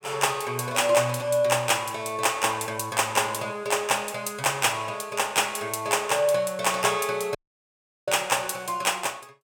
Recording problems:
audio cutting out; at 7.5 s for 0.5 s

